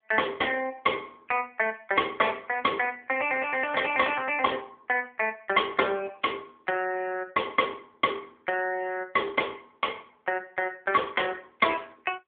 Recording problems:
telephone audio; 320 Hz to 3.4 kHz, AMR-NB

